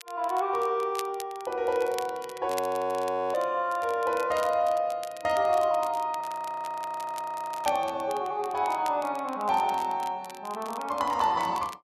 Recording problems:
crackle; vinyl, SNR 18 dB
frozen audio; at 2.5 s for 1 s and at 6 s for 1.5 s

